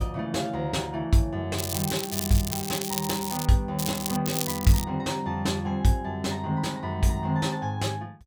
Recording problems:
crackle; from 1.5 to 3.5 s, at 4 s and at 4.5 s; loose cable, SNR 4 dB

